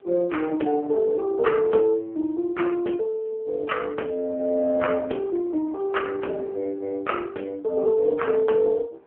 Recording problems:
phone line; 260 Hz to 3.3 kHz, AMR-NB
wind noise; below 760 Hz, SNR 24 dB

